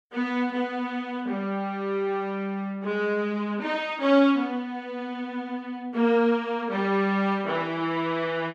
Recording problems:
none

